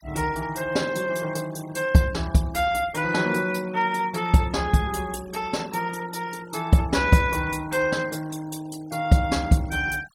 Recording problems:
noise reduction artefacts; signal-to-artefact ratio 21 dB

